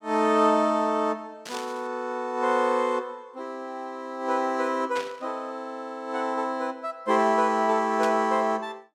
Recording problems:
burst of static; at 1.5 s, at 5 s and at 8 s; peak -6 dB vs average level

